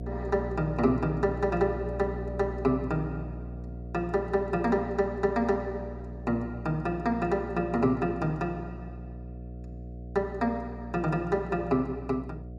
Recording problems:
hum; 60 Hz, harmonics up to 720 Hz, SNR 10 dB

